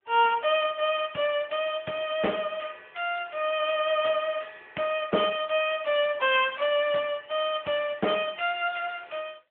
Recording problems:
telephone audio; 320 Hz to 3.4 kHz, AMR-NB

